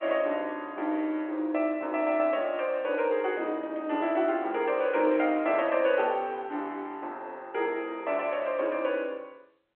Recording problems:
telephone audio; 260 Hz to 3.6 kHz, G.711

